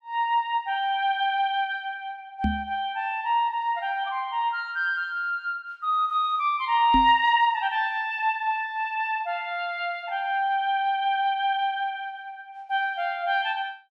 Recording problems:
microphone bump; at 2.5 s and at 7 s; peak +2 dB vs average level

